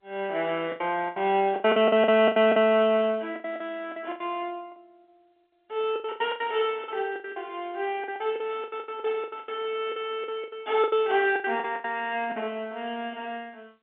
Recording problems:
telephone audio; 170 Hz to 3.6 kHz, G.711
packet loss; 17% of the sound replaced, filled with the last packet

